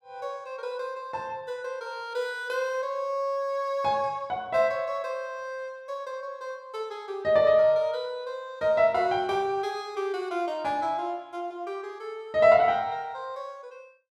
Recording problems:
none

